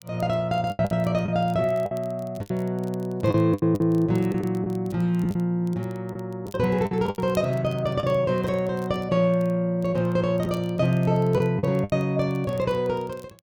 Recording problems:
crackling; vinyl, SNR 29 dB
packet loss; 7% of the sound replaced, filled with the last packet

